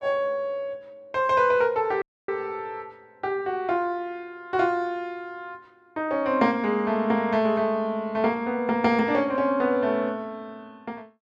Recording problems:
dropout; at 2 s

